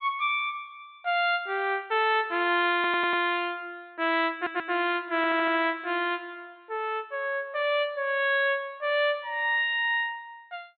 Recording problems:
treble cut off; nothing above 4.1 kHz
stutter; at 3 s, at 4.5 s and at 5 s

